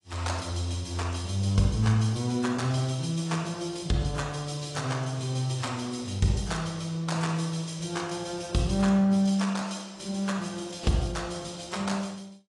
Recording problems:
lossy codec; AAC, log-spectral distance 4 dB, nothing above 10.1 kHz

